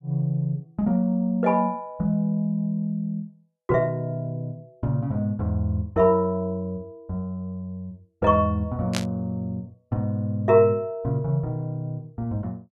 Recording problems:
burst of static; at 9 s; peak +1 dB vs average level

